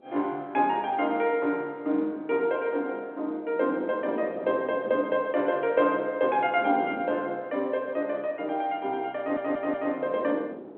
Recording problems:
telephone audio; 240 Hz to 3.4 kHz, G.711
wind on the microphone; below 510 Hz, SNR 14 dB
stutter; at 9 s

